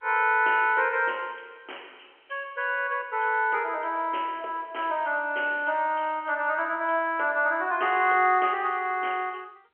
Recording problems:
telephone audio; 340 Hz to 3.2 kHz, G.711

